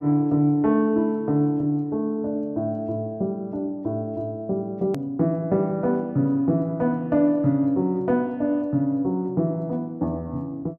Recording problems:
edit click; at 5 s

